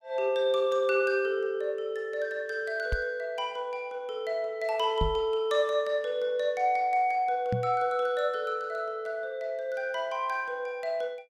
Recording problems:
microphone bump; at 3 s, at 5 s and at 7.5 s; peak +2 dB vs average level

